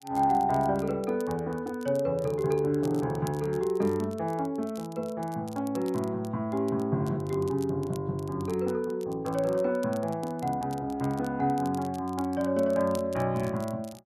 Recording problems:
crackle; vinyl, SNR 23 dB

